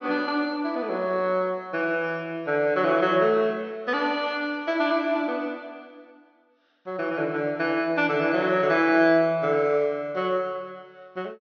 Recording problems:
treble cut off; nothing above 6.2 kHz

